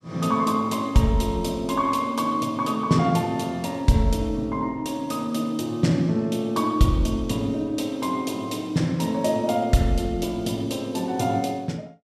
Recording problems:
none

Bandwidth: 14.5 kHz